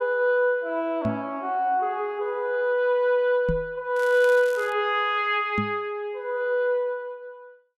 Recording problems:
microphone bump; at 1 s, at 3.5 s and at 5.5 s; peak 0 dB vs average level
crackling; at 4 s; loose cable, SNR 21 dB

